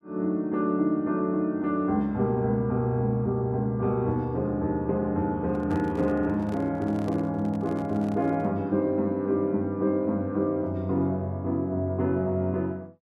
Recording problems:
microphone handling noise; from 5.5 to 8.5 s; peak -9 dB vs average level

